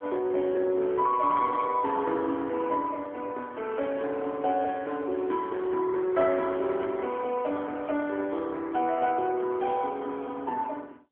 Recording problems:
telephone audio; 260 Hz to 3.4 kHz, AMR-NB

